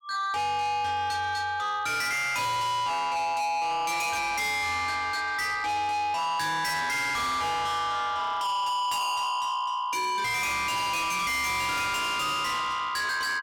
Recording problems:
distorted audio; soft clipping, signal-to-distortion ratio 6 dB

